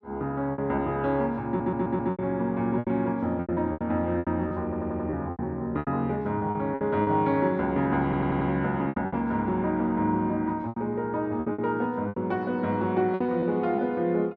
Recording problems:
lost packets; 11% of the sound replaced, filled with repeated pitch periods
audio stuttering; at 1.5 s, at 4.5 s and at 8 s

